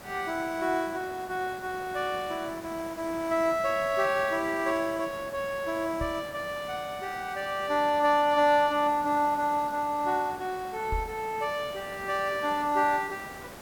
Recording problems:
background hiss; slope -5 dB per octave, SNR 16 dB
microphone bump; at 6 s and at 11 s; peak -2 dB vs average level

